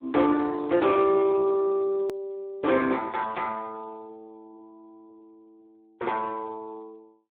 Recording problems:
phone line; 240 Hz to 2.8 kHz, Speex
hard cut with a click; at 2 s

